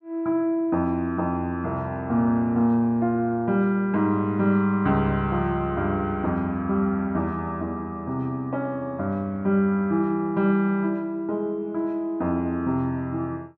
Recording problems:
none

